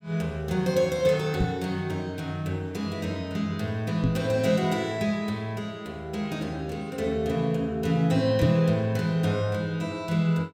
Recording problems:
microphone bump; at 1.5 s, at 4 s and at 8.5 s; peak +6 dB vs average level

